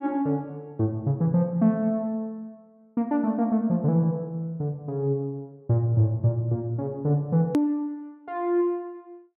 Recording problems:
hard cut with a click; at 7.5 s

